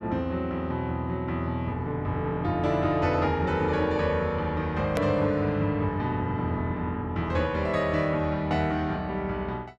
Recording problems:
edit click; at 5 s

